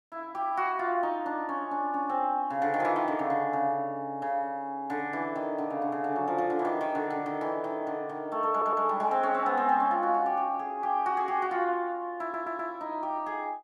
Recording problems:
audio stuttering; at 8.5 s and at 12 s

